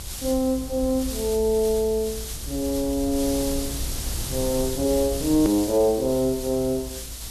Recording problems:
background hiss; slope +2 dB per octave, SNR 10 dB
rumble; below 100 Hz, SNR 12 dB
edit click; at 5.5 s

